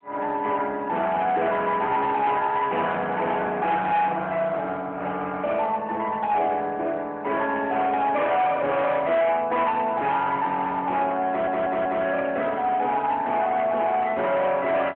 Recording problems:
telephone audio; 280 Hz to 3.3 kHz, AMR-NB
distorted audio; hard clipping, uneven, signal-to-distortion ratio 11 dB
stutter; at 11 s

